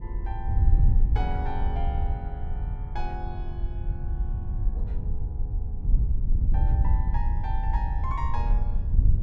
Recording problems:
wind noise; below 66 Hz, SNR -10 dB

